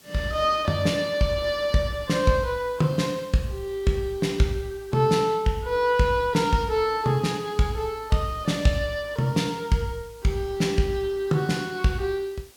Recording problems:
hiss; slope -1 dB per octave, SNR 26 dB

